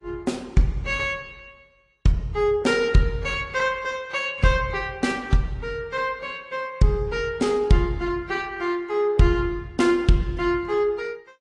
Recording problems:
lossy codec; Opus, then AAC, log-spectral distance 2 dB, nothing above 10.1 kHz

